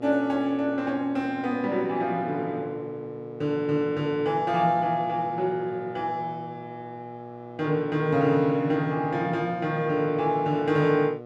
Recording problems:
hum; 60 Hz, harmonics up to 1.4 kHz, SNR 15 dB

